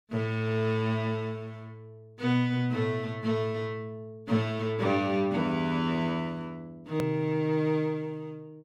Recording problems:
edit click; at 7 s

